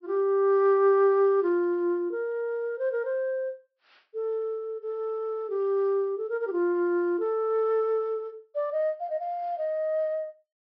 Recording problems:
treble cut off; nothing above 5.5 kHz

